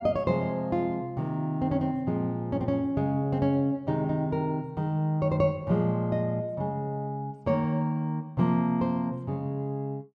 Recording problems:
none

